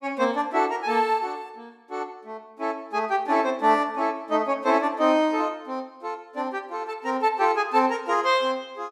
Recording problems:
none

